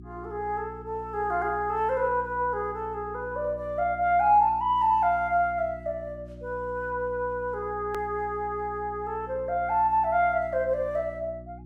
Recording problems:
electrical hum; 60 Hz, harmonics up to 360 Hz, SNR 18 dB
edit click; at 8 s

